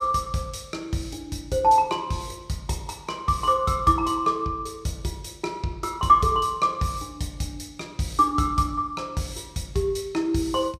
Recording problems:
none

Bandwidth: 15 kHz